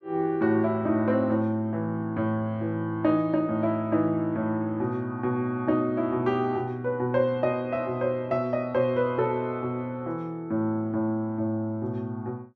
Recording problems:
none

